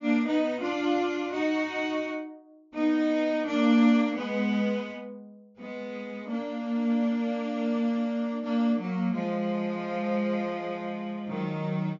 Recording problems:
treble missing; nothing above 7.2 kHz

